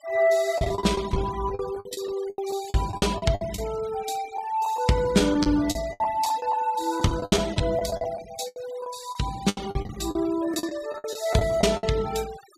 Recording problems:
denoising artefacts; signal-to-artefact ratio 18 dB
packet loss; 15% of the sound replaced, filled with the last packet

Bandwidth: 15 kHz